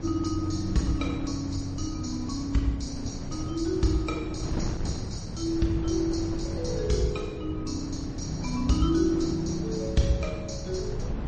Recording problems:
lossy compression; MP3, log-spectral distance 4 dB, nothing above 6.9 kHz
wind on the microphone; below 230 Hz, SNR 7 dB

